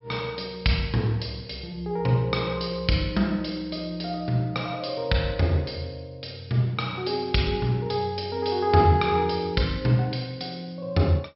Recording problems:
treble missing; nothing above 5.5 kHz

